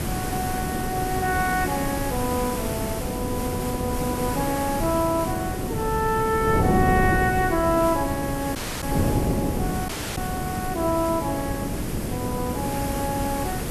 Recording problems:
background hiss; slope -2 dB per octave, SNR 8 dB
wind on the microphone; below 350 Hz, SNR 2 dB
dropout; at 8.5 s and at 10 s

